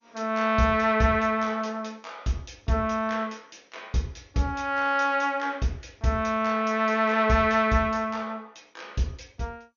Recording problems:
lossy compression; MP2, log-spectral distance 3 dB, nothing above 6.7 kHz

